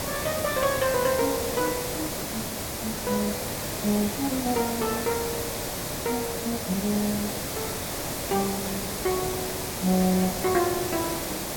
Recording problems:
background hiss; SNR 2 dB

